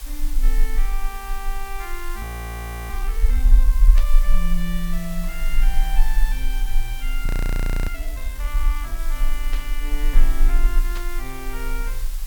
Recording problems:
hiss; slope +1 dB per octave, SNR 5 dB
low-frequency rumble; below 36 Hz, strongest tone 20 Hz, SNR -10 dB
audio freezing; at 2 s for 0.5 s and at 7.5 s for 0.5 s
burst of static; at 4 s, at 9.5 s and at 11 s; peak +2 dB vs average level

